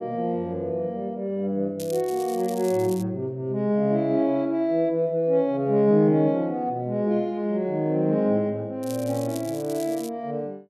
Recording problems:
crackle; from 2 to 3 s and from 9 to 10 s; loose cable, SNR 18 dB

